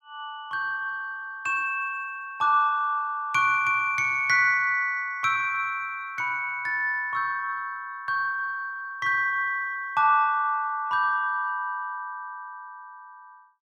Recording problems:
none

